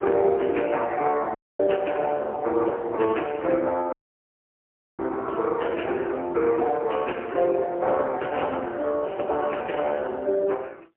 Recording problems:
phone line; 300 Hz to 3.1 kHz, AMR-NB, then MP3
audio cutting out; at 1.5 s and at 4 s for 1 s
crackle; at 9 s; loose cable, SNR 24 dB

